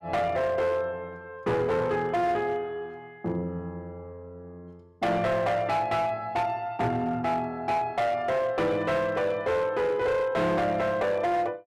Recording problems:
distortion; hard clipping, uneven, signal-to-distortion ratio 11 dB

